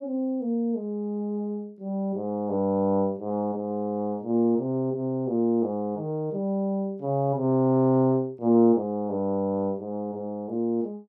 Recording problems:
none

